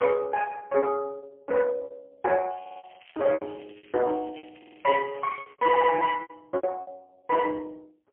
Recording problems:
telephone audio; 320 Hz to 2.9 kHz, AMR-NB, then MP3
lost packets; 13% of the sound replaced, filled with repeated pitch periods
crackle; from 2.5 to 5.5 s; loose cable, SNR 27 dB
stutter; at 2.5 s, at 4.5 s and at 5.5 s

